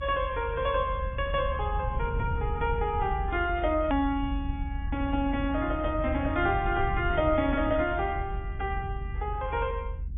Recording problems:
treble cut off; nothing above 3.2 kHz
codec artefacts; AAC, log-spectral distance 2 dB
low-frequency rumble; below 88 Hz, SNR 5 dB
hard cut with a click; at 4 s

